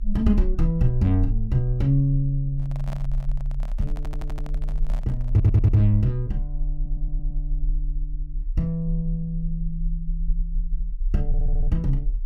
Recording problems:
rumble; below 36 Hz, strongest tone 34 Hz, SNR 6 dB
handling noise; from 2.5 to 6 s; peak -10 dB vs average level
audio stuttering; 4 times, first at 4 s

